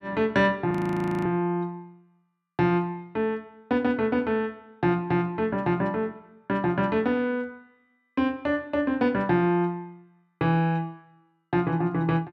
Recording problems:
audio freezing; at 0.5 s for 0.5 s

